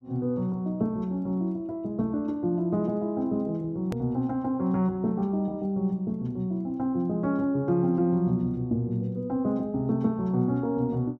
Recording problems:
click at an edit; at 4 s

